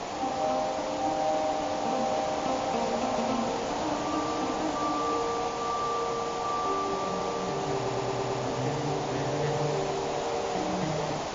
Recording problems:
lossy compression; MP3, log-spectral distance 13 dB
background hiss; SNR 2 dB
stutter; at 8 s

